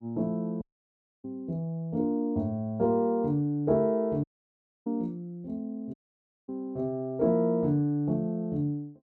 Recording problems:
dropout; at 0.5 s for 0.5 s, at 4 s for 0.5 s and at 6 s for 0.5 s

